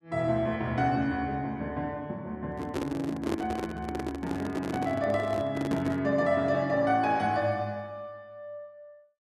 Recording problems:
handling noise; from 2.5 to 6 s; peak +2 dB vs average level

